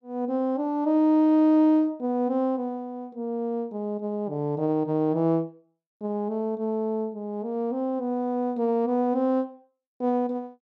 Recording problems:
none

